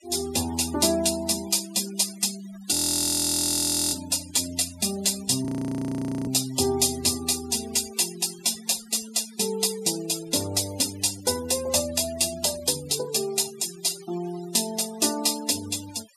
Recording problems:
noise reduction artefacts; signal-to-artefact ratio 15 dB
audio freezing; at 2.5 s for 1 s and at 5.5 s for 1 s

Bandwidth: 14 kHz